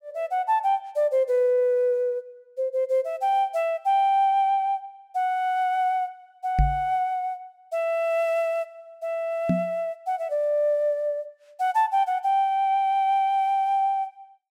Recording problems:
microphone thump; at 6.5 s and at 9.5 s; peak +6 dB vs average level

